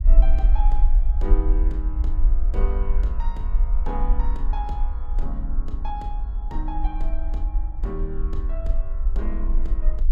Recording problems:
rumble; below 44 Hz, strongest tone 20 Hz, SNR -10 dB

